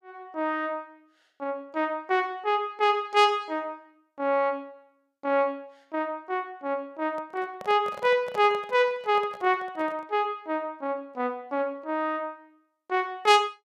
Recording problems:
handling noise; from 7 to 10 s; peak -8 dB vs average level

